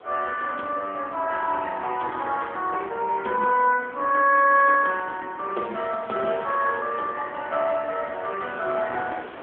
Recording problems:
telephone audio; 320 Hz to 3.4 kHz, AMR-NB
wind noise; below 1.4 kHz, SNR 21 dB

